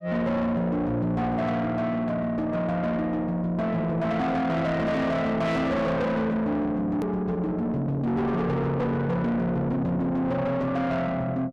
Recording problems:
distortion; soft clipping, signal-to-distortion ratio 7 dB
edit click; at 7 s

